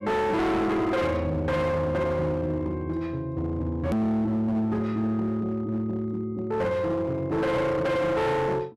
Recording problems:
distortion; hard clipping, uneven, signal-to-distortion ratio 8 dB
click at an edit; at 4 s

